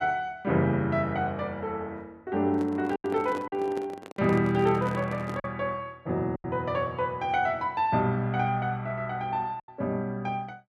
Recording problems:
lost packets; 3% of the sound replaced, filled with silence
microphone handling noise; from 2.5 to 5.5 s; peak -5 dB vs average level

